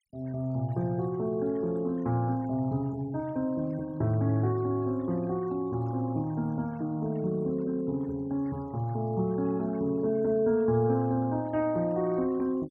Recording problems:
noise reduction artefacts; signal-to-artefact ratio 26 dB

